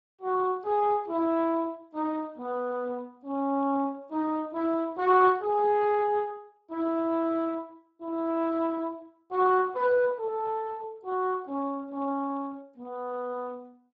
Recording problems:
lossy codec; Speex, log-spectral distance 2 dB

